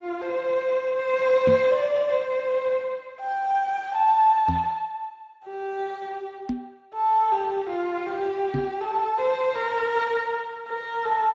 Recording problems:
lossy codec; Speex, log-spectral distance 3 dB
microphone thump; 4 times, first at 1.5 s; peak +1 dB vs average level

